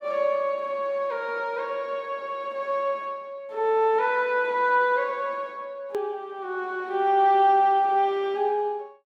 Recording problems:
hard cut with a click; at 6 s

